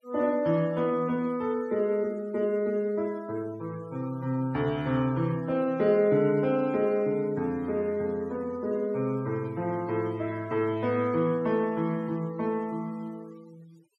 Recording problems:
denoising artefacts; signal-to-artefact ratio 26 dB

